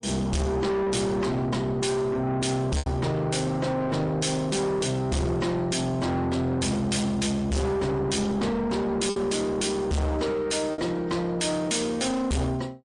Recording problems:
lossy codec; MP3, log-spectral distance 3 dB, nothing above 9 kHz
distorted audio; soft clipping, signal-to-distortion ratio 6 dB
lost packets; 1.7% of the sound replaced, filled with repeated pitch periods

